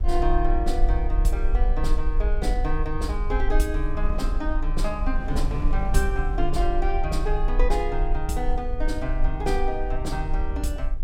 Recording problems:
rumble; below 42 Hz, strongest tone 20 Hz, SNR -1 dB
wind on the microphone; below 300 Hz, SNR 14 dB

